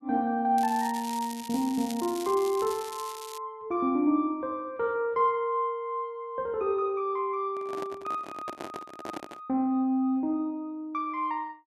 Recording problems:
crackling; from 0.5 to 3.5 s; loose cable, SNR 13 dB
handling noise; from 7.5 to 9.5 s; peak -4 dB vs average level

